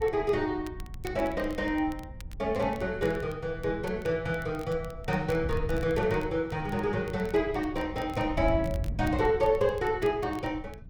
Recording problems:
wind noise; below 110 Hz, SNR 11 dB
crackling; vinyl, SNR 25 dB

